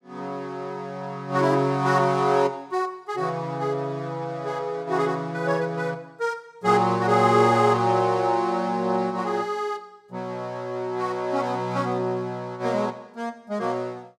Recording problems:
none

